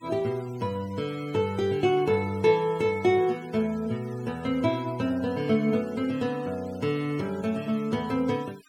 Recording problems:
denoising artefacts; signal-to-artefact ratio 22 dB

